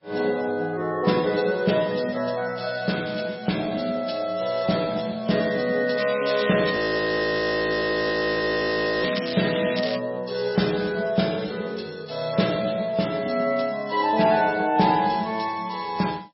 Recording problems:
lossy compression; MP3, log-spectral distance 8 dB, nothing above 5.3 kHz
crackle; from 6 to 10 s; loose cable, SNR 9 dB
audio freezing; at 7 s for 2.5 s

